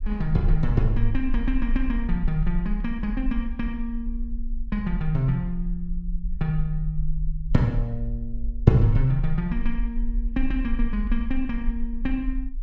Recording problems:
low-frequency rumble; below 42 Hz, SNR 4 dB

